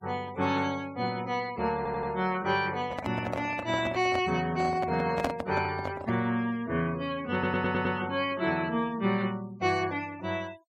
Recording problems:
denoising artefacts; signal-to-artefact ratio 21 dB
stutter; at 2 s and at 7.5 s
handling noise; from 3 to 6.5 s; peak +3 dB vs average level

